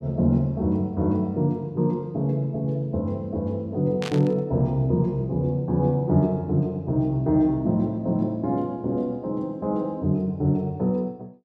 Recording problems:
static burst; at 4 s; peak -5 dB vs average level

